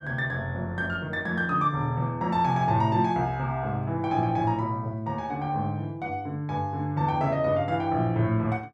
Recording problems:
none

